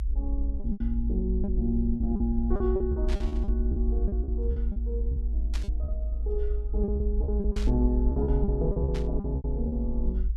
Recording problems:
rumble; below 58 Hz, strongest tone 54 Hz, SNR -2 dB
packet loss; 13% of the sound replaced, filled with repeated pitch periods
burst of static; 4 times, first at 3 s; peak -5 dB vs average level

